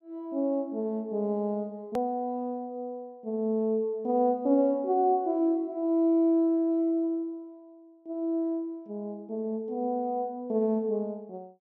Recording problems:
edit click; at 2 s

